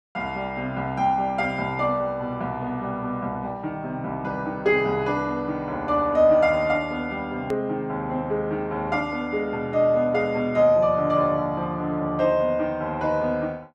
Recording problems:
click at an edit; at 7.5 s

